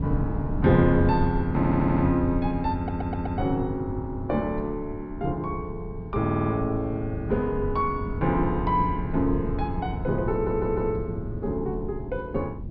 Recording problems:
low-pass filter; nothing above 5.5 kHz
rumble; below 160 Hz, SNR 7 dB
audio stuttering; 4 times, first at 1.5 s

